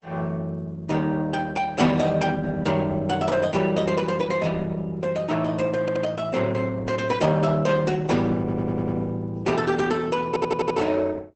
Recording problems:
lossy compression; Opus, log-spectral distance 3 dB, nothing above 8.2 kHz
audio stuttering; at 6 s, at 8.5 s and at 10 s

